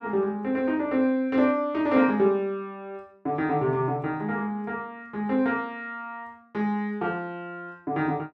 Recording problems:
none

